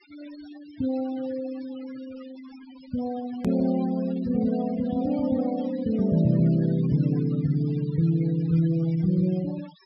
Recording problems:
low-pass filter; nothing above 5.5 kHz
denoising artefacts; signal-to-artefact ratio 20 dB
edit click; at 3.5 s

